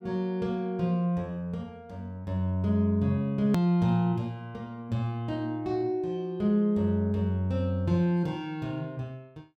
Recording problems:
click at an edit; at 3.5 s

